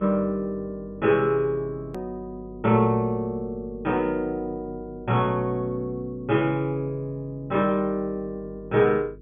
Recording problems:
treble missing; nothing above 3.5 kHz
electrical hum; 50 Hz, harmonics up to 450 Hz, SNR 21 dB
click at an edit; at 2 s

